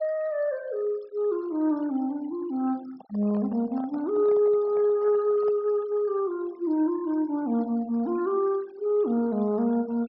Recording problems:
treble missing; nothing above 5.5 kHz
denoising artefacts; signal-to-artefact ratio 25 dB
handling noise; from 3 to 5.5 s; peak -14 dB vs average level

